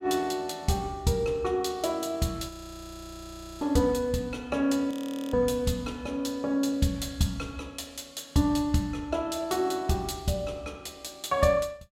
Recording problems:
audio freezing; at 2.5 s for 1 s and at 5 s

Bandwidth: 16 kHz